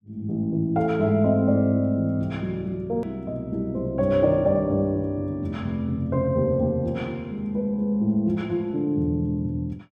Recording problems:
edit click; at 3 s

